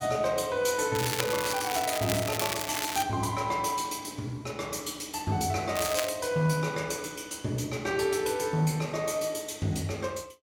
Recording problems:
crackling; from 1 to 3 s and at 6 s; loose cable, SNR 4 dB

